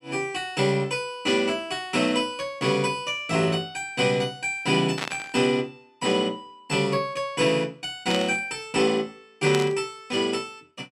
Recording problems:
burst of static; at 5 s, at 8 s and at 9.5 s; peak 0 dB vs average level

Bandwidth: 13.5 kHz